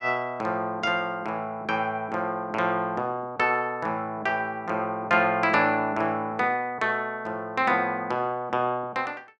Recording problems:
none

